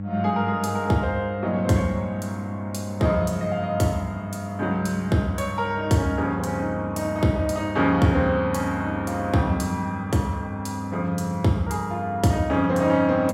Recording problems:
hum; 50 Hz, harmonics up to 600 Hz, SNR 9 dB

